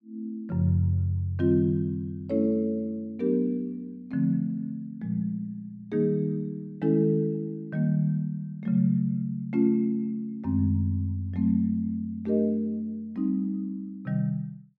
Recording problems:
none

